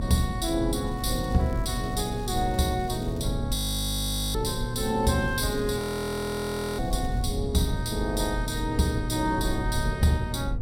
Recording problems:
hum; 60 Hz, harmonics up to 960 Hz, SNR 10 dB
rumble; below 100 Hz, strongest tone 44 Hz, SNR 6 dB
crackle; from 1 to 3.5 s and from 5 to 7.5 s; loose cable, SNR 25 dB
frozen audio; at 3.5 s for 1 s and at 6 s for 1 s

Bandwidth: 16 kHz